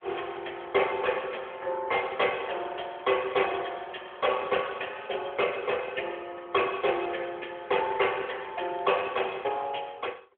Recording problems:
telephone audio; 320 Hz to 3.3 kHz, AMR-NB

